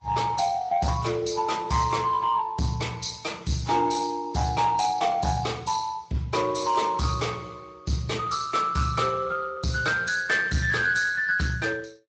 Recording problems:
lossy compression; Vorbis, then Speex, log-spectral distance 5 dB, nothing above 7.3 kHz
distorted audio; soft clipping, signal-to-distortion ratio 11 dB

